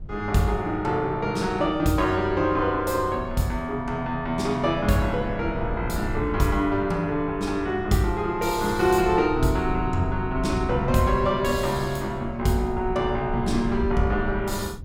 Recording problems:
wind noise; below 110 Hz, SNR 11 dB

